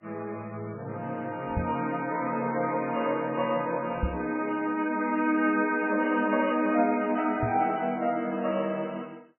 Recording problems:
lossy codec; MP3, log-spectral distance 3 dB, nothing above 2.5 kHz
knock on the microphone; at 1.5 s, at 4 s and at 7.5 s; peak +2 dB vs average level

